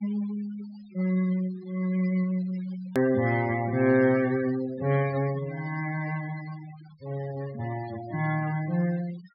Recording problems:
treble cut off; nothing above 5.1 kHz
denoising artefacts; signal-to-artefact ratio 17 dB
click at an edit; at 3 s

